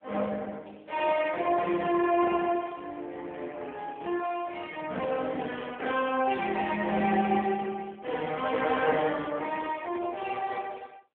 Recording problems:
phone line; 240 Hz to 3.4 kHz, AMR-NB

